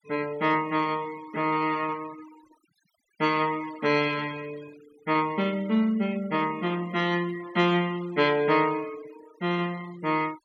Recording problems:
noise reduction artefacts; signal-to-artefact ratio 22 dB

